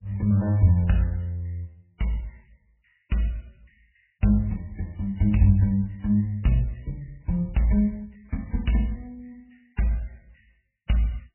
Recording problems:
lossy codec; MP3, log-spectral distance 8 dB, nothing above 2.9 kHz

